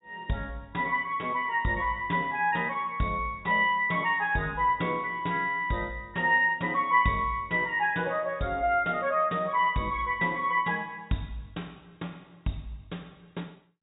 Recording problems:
treble cut off; nothing above 4 kHz

